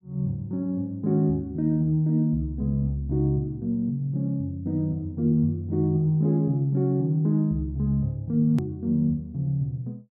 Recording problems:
edit click; at 8.5 s

